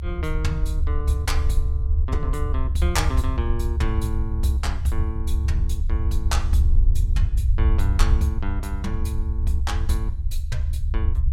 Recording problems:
rumble; below 72 Hz, SNR -5 dB

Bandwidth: 16 kHz